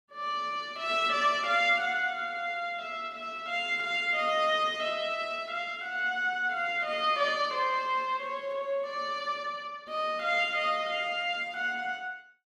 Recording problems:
none

